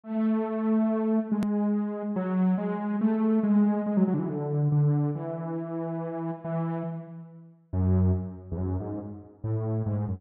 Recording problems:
edit click; at 1.5 s

